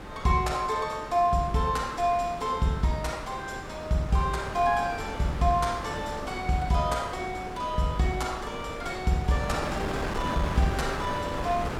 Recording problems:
wind noise; below 1.3 kHz, SNR 8 dB

